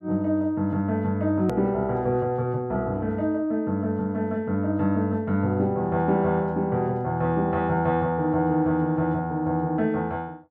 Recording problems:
edit click; at 1.5 s

